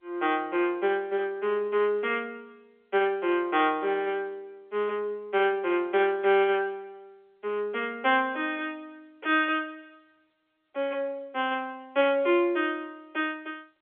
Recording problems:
telephone audio; 280 Hz to 3.4 kHz, G.711

